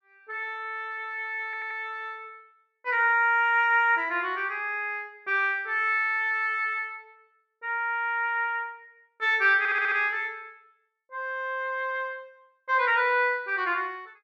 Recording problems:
audio stuttering; at 1.5 s and at 9.5 s

